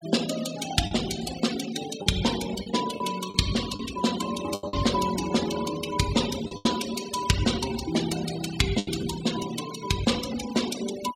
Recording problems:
noise reduction artefacts; signal-to-artefact ratio 10 dB
lost packets; 5% of the sound replaced, filled with the last packet

